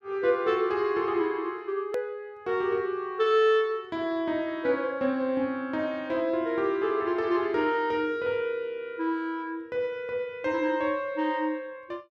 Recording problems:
hard cut with a click; at 2 s

